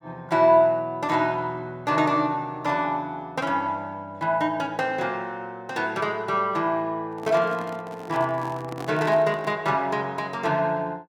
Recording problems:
handling noise; from 7 to 9.5 s; peak -6 dB vs average level

